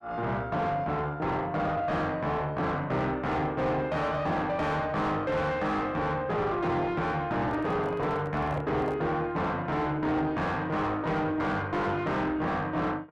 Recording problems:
distorted audio; soft clipping, signal-to-distortion ratio 6 dB
microphone handling noise; from 7.5 to 9 s; peak -1 dB vs average level

